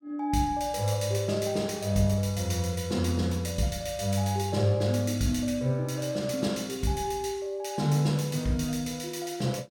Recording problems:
none

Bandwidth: 17.5 kHz